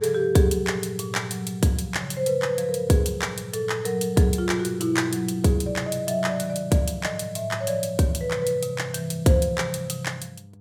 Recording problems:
hum; 50 Hz, harmonics up to 700 Hz, SNR 21 dB

